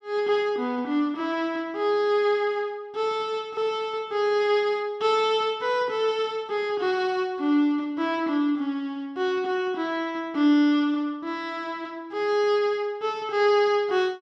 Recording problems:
none

